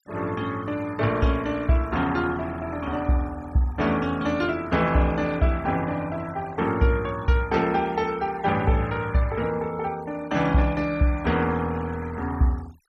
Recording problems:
denoising artefacts; signal-to-artefact ratio 21 dB

